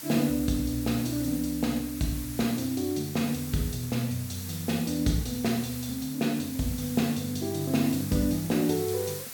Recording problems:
hiss; slope 0 dB per octave, SNR 10 dB

